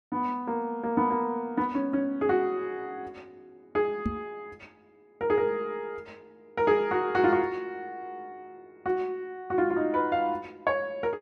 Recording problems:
microphone bump; at 4 s; peak +2 dB vs average level

